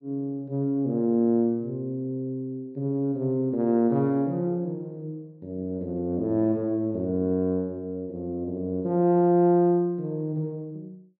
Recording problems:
none

